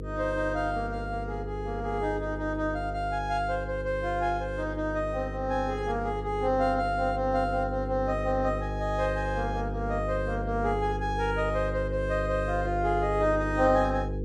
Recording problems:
hum; 50 Hz, harmonics up to 500 Hz, SNR 6 dB

